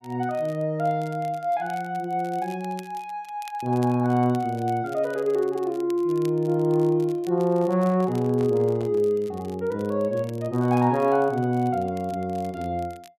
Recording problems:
crackle; vinyl, SNR 26 dB
handling noise; from 7 to 9 s; peak -11 dB vs average level

